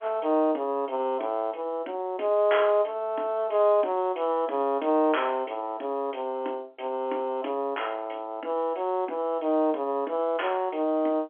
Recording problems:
telephone audio; 260 Hz to 3.4 kHz, G.711

